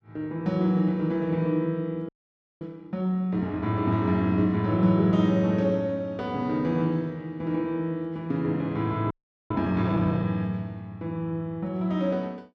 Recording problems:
frozen audio; at 2 s for 0.5 s and at 9 s

